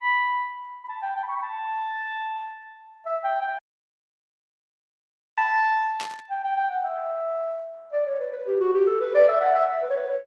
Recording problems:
codec artefacts; Opus, log-spectral distance 2 dB
audio cutting out; at 3.5 s for 2 s
static burst; at 6 s; peak -6 dB vs average level

